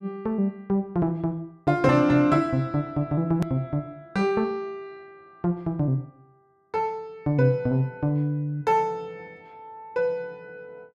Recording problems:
click at an edit; at 3.5 s

